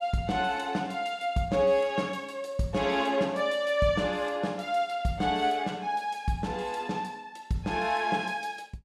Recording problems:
none

